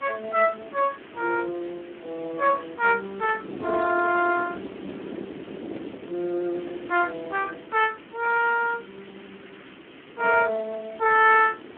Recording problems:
telephone audio; 240 Hz to 2.8 kHz, Speex
background hiss; SNR 23 dB
wind noise; below 450 Hz, SNR 17 dB

